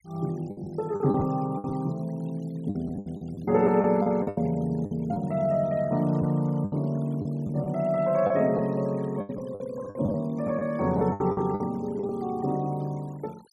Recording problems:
noise reduction artefacts; signal-to-artefact ratio 26 dB
packet loss; 10% of the sound replaced, filled with the last packet

